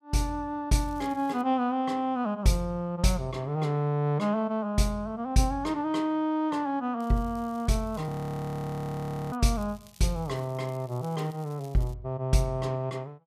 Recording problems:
crackle; at 0.5 s, from 7 to 9.5 s and from 9.5 to 12 s; loose cable, SNR 27 dB
frozen audio; at 8 s for 1 s

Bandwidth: 14.5 kHz